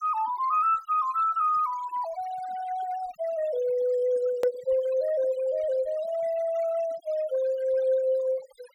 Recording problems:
noise reduction artefacts; signal-to-artefact ratio 20 dB
edit click; at 4.5 s

